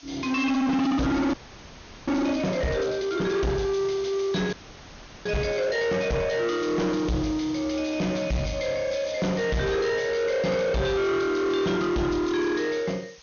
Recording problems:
treble cut off; nothing above 6.6 kHz
distortion; soft clipping, signal-to-distortion ratio 6 dB
background hiss; slope +2 dB per octave, SNR 22 dB
frozen audio; at 1.5 s for 0.5 s and at 4.5 s for 0.5 s

